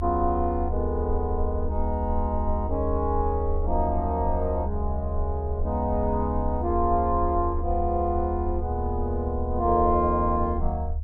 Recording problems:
rumble; below 76 Hz, SNR 4 dB

